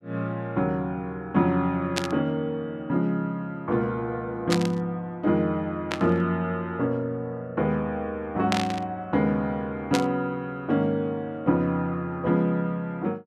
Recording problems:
burst of static; 5 times, first at 2 s; peak +4 dB vs average level

